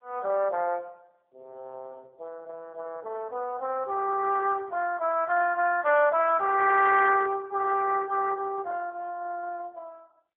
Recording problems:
phone line; 300 Hz to 3.5 kHz, AMR-NB

